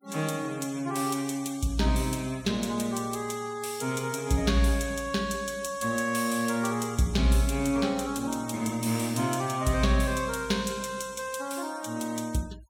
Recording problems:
noise reduction artefacts; signal-to-artefact ratio 21 dB

